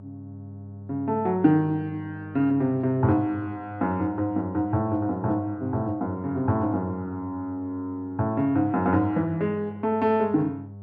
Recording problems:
hum; 50 Hz, harmonics up to 600 Hz, SNR 16 dB

